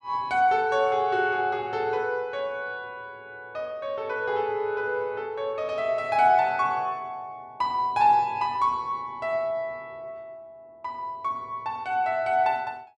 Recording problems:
none

